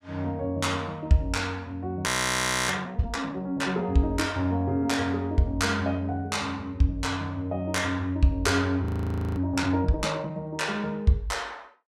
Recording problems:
audio freezing; at 2 s for 0.5 s and at 9 s for 0.5 s

